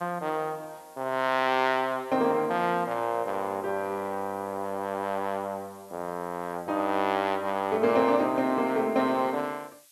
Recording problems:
background hiss; slope +5 dB per octave, SNR 27 dB

